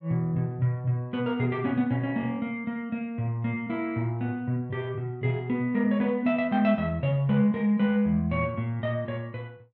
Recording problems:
none

